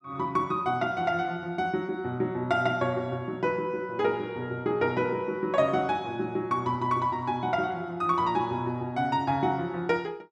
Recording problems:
none

